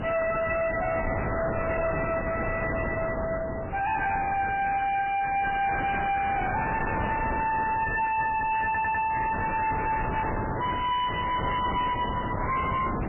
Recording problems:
codec artefacts; MP3, log-spectral distance 6 dB, nothing above 2.7 kHz
distorted audio; soft clipping, signal-to-distortion ratio 6 dB
wind noise; below 1 kHz, SNR 5 dB
stutter; at 8.5 s

